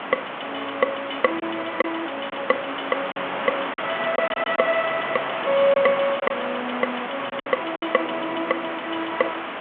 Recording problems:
telephone audio; 280 Hz to 3.4 kHz, G.726
hiss; SNR 5 dB
lost packets; 5% of the sound replaced, filled with silence

